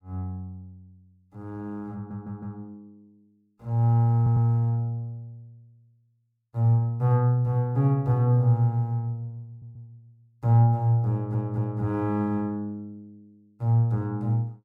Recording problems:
audio stuttering; 4 times, first at 2 s

